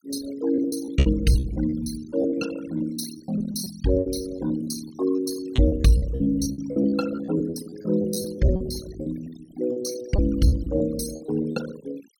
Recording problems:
denoising artefacts; signal-to-artefact ratio 14 dB
lost packets; 16% of the sound replaced, filled with repeated pitch periods

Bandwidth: 17.5 kHz